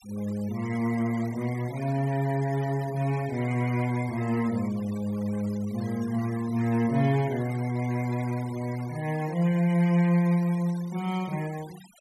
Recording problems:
noise reduction artefacts; signal-to-artefact ratio 20 dB

